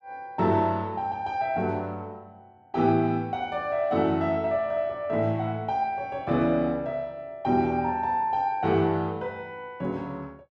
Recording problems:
none

